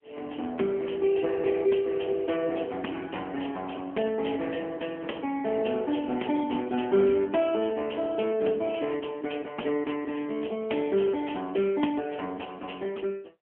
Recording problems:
phone line; 220 Hz to 3.3 kHz, AMR-NB

